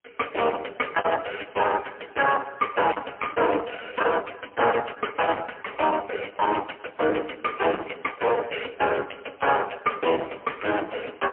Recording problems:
telephone audio; 260 Hz to 3.2 kHz, AMR-NB, then MP3
distortion; hard clipping, signal-to-distortion ratio 7 dB
packet loss; 13% of the sound replaced, filled with the last packet

